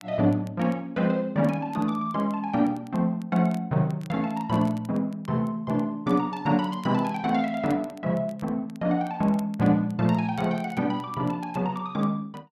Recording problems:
crackling; vinyl, SNR 28 dB

